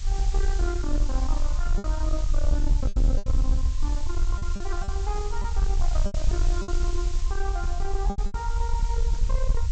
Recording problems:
treble cut off; nothing above 8 kHz
distorted audio; soft clipping, signal-to-distortion ratio 11 dB
background hiss; slope +3 dB per octave, SNR 9 dB
low-frequency rumble; below 50 Hz, SNR -7 dB
packet loss; 7% of the sound replaced, filled with repeated pitch periods

